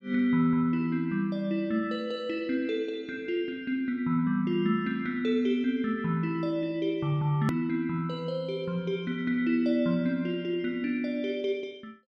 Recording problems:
hard cut with a click; at 7.5 s

